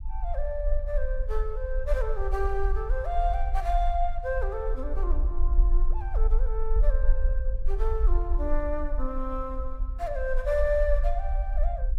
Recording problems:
low-frequency rumble; below 46 Hz, strongest tone 24 Hz, SNR -2 dB

